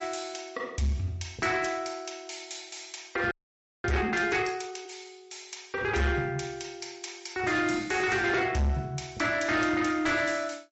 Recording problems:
treble missing; nothing above 7.6 kHz
lossy compression; MP3, log-spectral distance 4 dB
distorted audio; soft clipping, signal-to-distortion ratio 11 dB
audio freezing; at 3.5 s for 0.5 s

